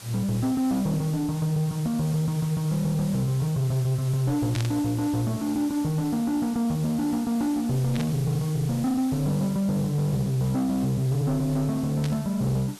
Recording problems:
distorted audio; soft clipping, signal-to-distortion ratio 11 dB
hiss; slope -1 dB per octave, SNR 17 dB
burst of static; at 4.5 s, at 8 s and at 12 s; peak -5 dB vs average level

